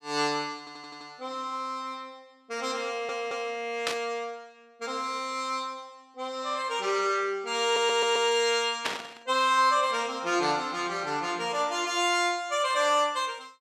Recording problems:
audio stuttering; at 0.5 s, at 3 s and at 7.5 s
static burst; at 4 s and at 9 s; peak +3 dB vs average level

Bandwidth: 14.5 kHz